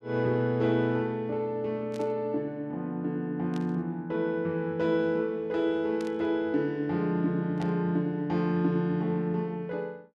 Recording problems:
burst of static; 4 times, first at 2 s; peak -12 dB vs average level

